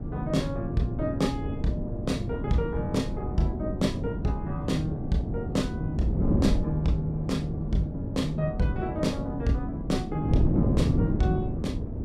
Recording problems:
wind on the microphone; below 240 Hz, SNR 1 dB

